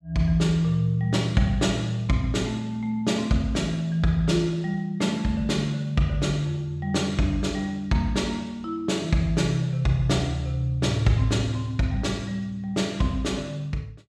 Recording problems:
none

